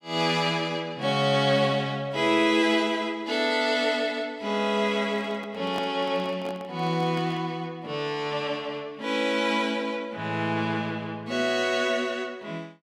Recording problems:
handling noise; from 5 to 7.5 s; peak -5 dB vs average level

